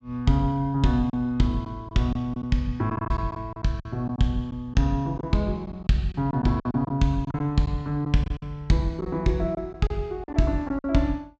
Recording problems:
low-pass filter; nothing above 8 kHz
lost packets; 8% of the sound replaced, filled with silence

